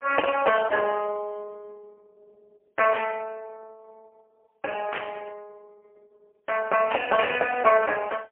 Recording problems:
phone line; 370 Hz to 3.1 kHz, AMR-NB, then MP3
static burst; at 3 s, at 5 s and at 7 s; peak -2 dB vs average level

